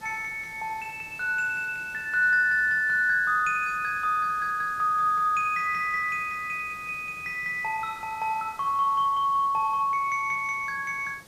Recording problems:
background hiss; SNR 24 dB

